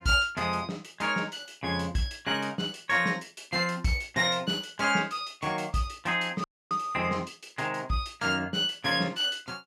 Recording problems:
audio cutting out; at 6.5 s

